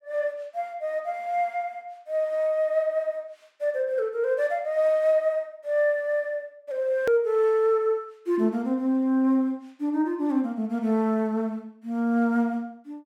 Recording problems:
edit click; at 7 s

